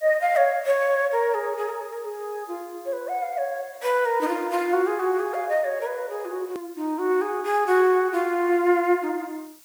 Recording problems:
hiss; slope +1 dB per octave, SNR 25 dB
edit click; at 6.5 s

